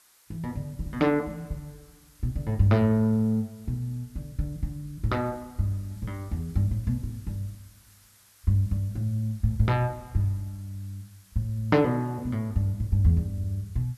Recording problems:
background hiss; SNR 28 dB

